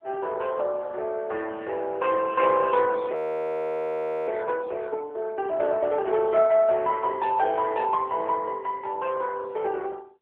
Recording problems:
phone line; 340 Hz to 3.5 kHz, AMR-NB
audio freezing; at 3 s for 1 s

